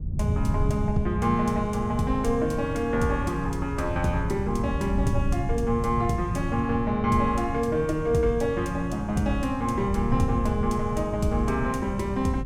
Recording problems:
wind on the microphone; below 130 Hz, SNR 5 dB

